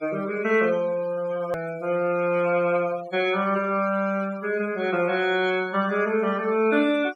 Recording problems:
noise reduction artefacts; signal-to-artefact ratio 20 dB
edit click; at 1.5 s

